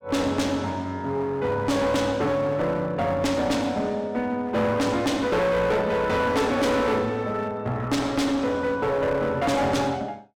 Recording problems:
distorted audio; hard clipping, uneven, signal-to-distortion ratio 6 dB

